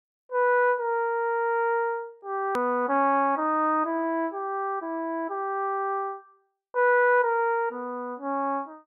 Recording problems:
click at an edit; at 2.5 s

